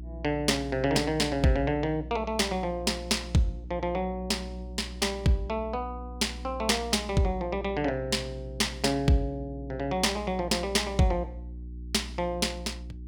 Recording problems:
hum; 60 Hz, harmonics up to 360 Hz, SNR 12 dB

